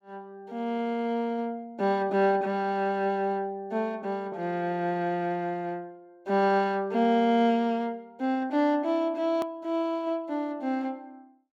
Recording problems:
click at an edit; at 9.5 s

